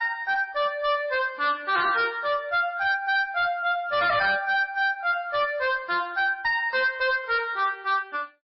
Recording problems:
lossy compression; MP3, log-spectral distance 2 dB, nothing above 4.8 kHz
distortion; hard clipping, signal-to-distortion ratio 11 dB

